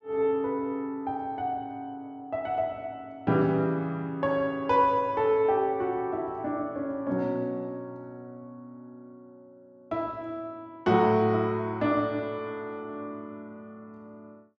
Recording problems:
none

